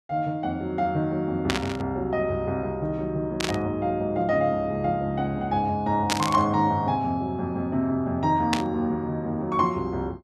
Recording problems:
burst of static; 4 times, first at 1.5 s; peak +5 dB vs average level

